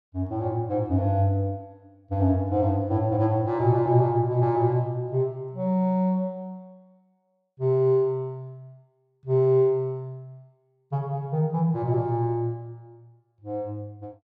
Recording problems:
none

